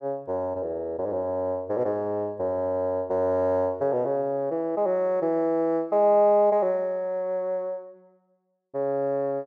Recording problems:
none

